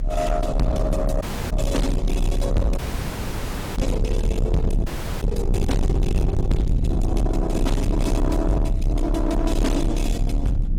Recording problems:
codec artefacts; Opus, log-spectral distance 2 dB, nothing above 18.3 kHz
distorted audio; soft clipping, signal-to-distortion ratio 7 dB
rumble; below 98 Hz, strongest tone 32 Hz, SNR 0 dB
wind noise; below 640 Hz, SNR 23 dB
audio cutting out; at 1 s, at 3 s for 1 s and at 5 s

